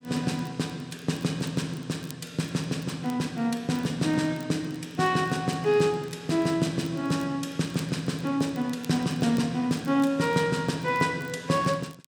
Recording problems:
crackle; vinyl, SNR 26 dB

